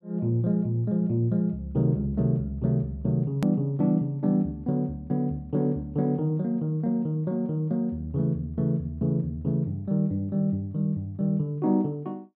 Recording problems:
click at an edit; at 3.5 s

